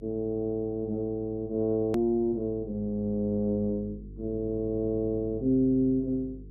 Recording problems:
electrical hum; 50 Hz, harmonics up to 450 Hz, SNR 17 dB
hard cut with a click; at 2 s

